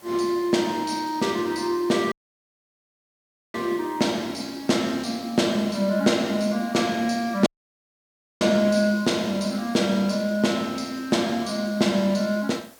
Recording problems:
background hiss; slope -3 dB per octave, SNR 25 dB
audio cutting out; at 2 s for 1.5 s and at 7.5 s for 1 s

